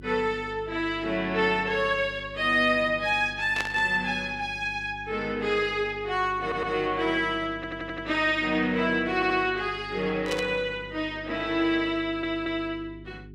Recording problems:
hum; 50 Hz, harmonics up to 400 Hz, SNR 19 dB
burst of static; at 3.5 s and at 10 s; peak -1 dB vs average level
stutter; 4 times, first at 6.5 s

